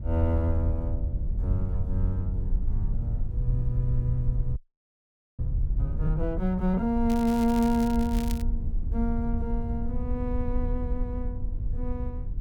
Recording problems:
rumble; below 68 Hz, SNR 2 dB
audio freezing; at 4.5 s for 1 s
crackle; from 7 to 8.5 s; loose cable, SNR 14 dB

